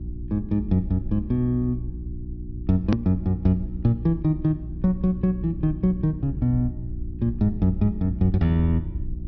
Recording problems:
treble missing; nothing above 5.9 kHz
electrical hum; 60 Hz, harmonics up to 360 Hz, SNR 12 dB
rumble; below 80 Hz, SNR 14 dB
edit click; at 3 s

